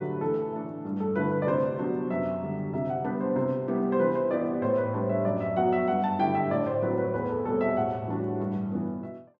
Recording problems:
none

